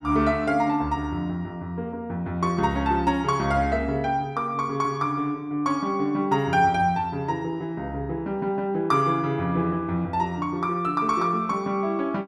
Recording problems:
none

